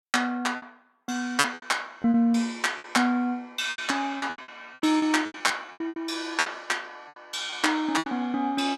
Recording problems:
lost packets; 15% of the sound replaced, filled with repeated pitch periods

